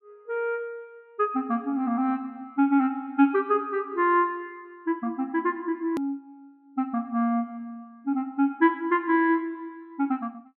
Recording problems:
low-pass filter; nothing above 4.2 kHz
click at an edit; at 6 s

